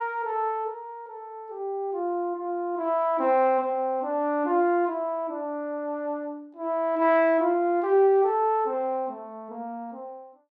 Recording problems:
none

